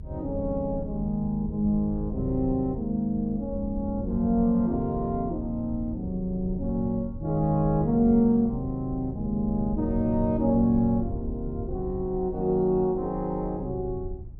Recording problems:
rumble; below 92 Hz, SNR 11 dB

